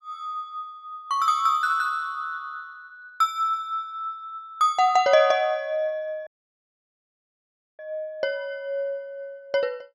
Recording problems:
dropout; at 6.5 s for 1.5 s

